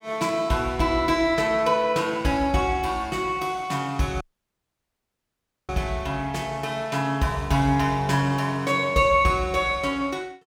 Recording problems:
audio cutting out; at 4 s for 1.5 s

